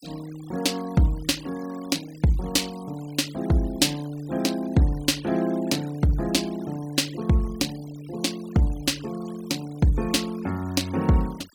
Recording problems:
denoising artefacts; signal-to-artefact ratio 21 dB

